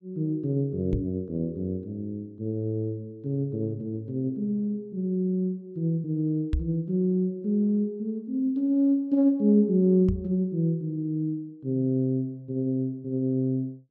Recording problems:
microphone bump; at 1 s, at 6.5 s and at 10 s; peak +4 dB vs average level

